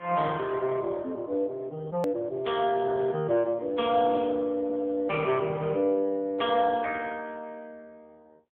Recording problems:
telephone audio; 190 Hz to 2.8 kHz, AMR-NB
click at an edit; at 2 s

